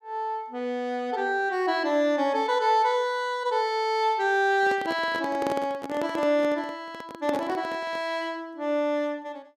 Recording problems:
microphone handling noise; from 4.5 to 8 s; peak -2 dB vs average level

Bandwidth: 15.5 kHz